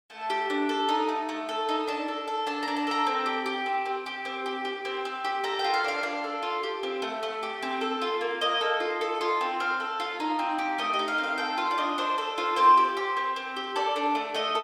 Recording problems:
none

